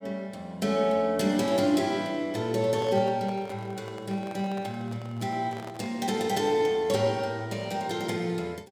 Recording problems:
handling noise; from 2.5 to 6 s; peak -10 dB vs average level

